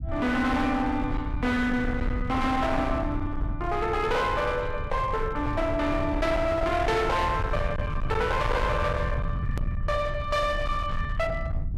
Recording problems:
distorted audio; hard clipping, signal-to-distortion ratio 8 dB
low-frequency rumble; below 130 Hz, SNR 5 dB
edit click; at 9.5 s

